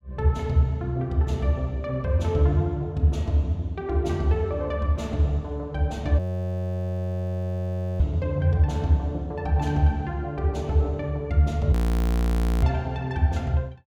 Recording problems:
audio freezing; at 6 s for 2 s and at 12 s for 1 s

